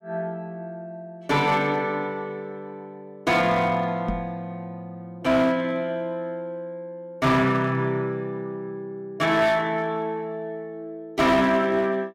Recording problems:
distortion; hard clipping, uneven, signal-to-distortion ratio 12 dB
knock on the microphone; at 4 s; peak 0 dB vs average level

